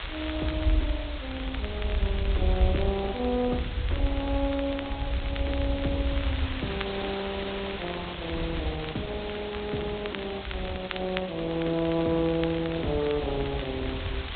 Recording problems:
treble cut off; nothing above 3.7 kHz
codec artefacts; Opus, log-spectral distance 7 dB
background hiss; SNR 8 dB
rumble; below 78 Hz, SNR 4 dB
crackling; vinyl, SNR 13 dB

